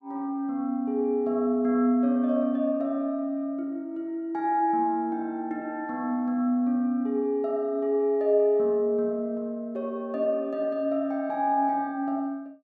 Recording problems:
none

